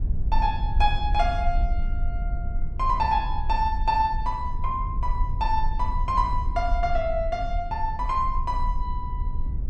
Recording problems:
low-frequency rumble; below 56 Hz, SNR 3 dB

